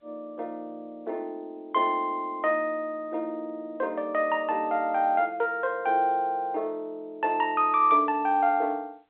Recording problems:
phone line; 320 Hz to 3.5 kHz, G.711

